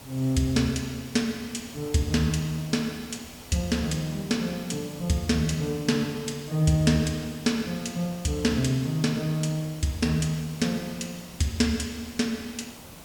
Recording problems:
background hiss; SNR 17 dB

